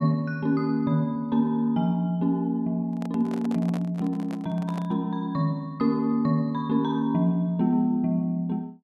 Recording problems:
handling noise; from 3 to 5 s; peak -10 dB vs average level

